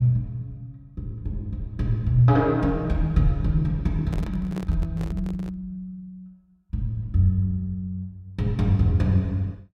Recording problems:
handling noise; from 4 to 5.5 s; peak -7 dB vs average level

